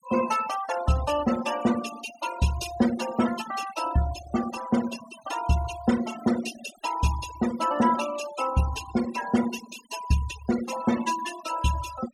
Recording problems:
noise reduction artefacts; signal-to-artefact ratio 11 dB

